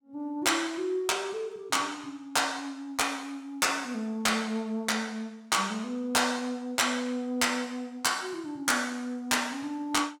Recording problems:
distortion; hard clipping, signal-to-distortion ratio 10 dB

